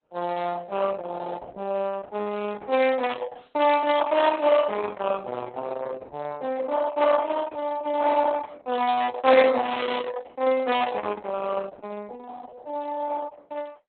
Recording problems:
lossy compression; Opus, log-spectral distance 4 dB, nothing above 3.9 kHz

